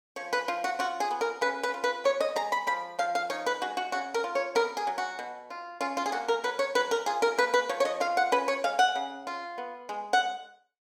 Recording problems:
none

